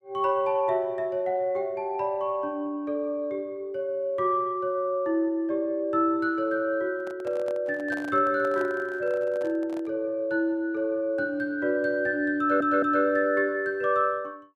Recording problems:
handling noise; from 7 to 10 s; peak -10 dB vs average level
stutter; at 12 s

